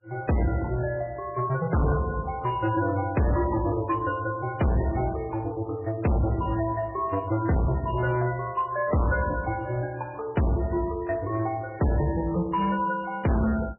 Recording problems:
lossy codec; MP3, log-spectral distance 3 dB, nothing above 2.5 kHz
distortion; hard clipping, signal-to-distortion ratio 7 dB

